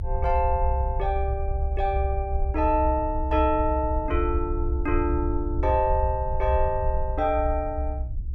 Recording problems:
rumble; below 68 Hz, SNR 3 dB

